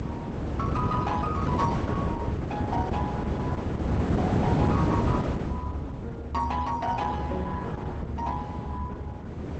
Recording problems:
lossy compression; Opus, log-spectral distance 3 dB, nothing above 8 kHz
low-frequency rumble; below 86 Hz, strongest tone 72 Hz, SNR 4 dB
wind noise; below 410 Hz, SNR -4 dB

